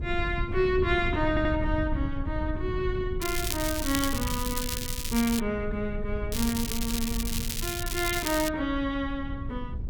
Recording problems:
wind on the microphone; below 100 Hz, SNR 5 dB
audio stuttering; at 1.5 s
crackle; from 3 to 5.5 s and from 6.5 to 8.5 s; loose cable, SNR 3 dB

